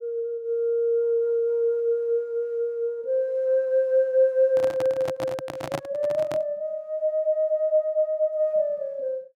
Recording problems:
microphone handling noise; from 4.5 to 6.5 s; peak -2 dB vs average level

